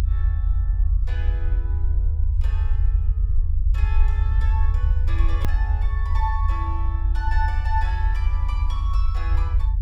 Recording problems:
low-frequency rumble; below 76 Hz, SNR -11 dB
hard cut with a click; at 5.5 s

